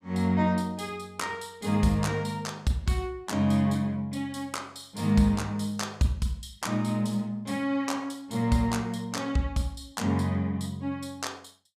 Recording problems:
none

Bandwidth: 14.5 kHz